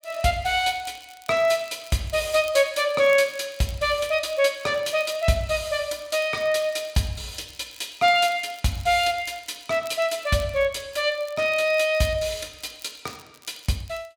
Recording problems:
crackling; vinyl, SNR 24 dB

